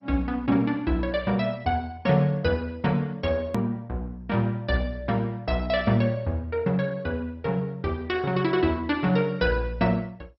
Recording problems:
lossy codec; MP2, log-spectral distance 2 dB, nothing above 15.1 kHz
hard cut with a click; at 3.5 s

